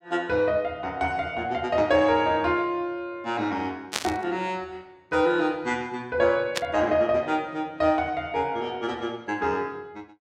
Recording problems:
burst of static; at 4 s and at 6.5 s; peak +4 dB vs average level

